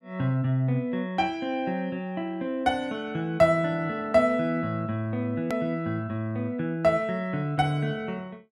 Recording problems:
hard cut with a click; at 5.5 s

